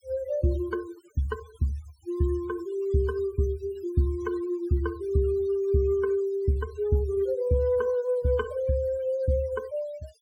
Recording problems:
noise reduction artefacts; signal-to-artefact ratio 22 dB

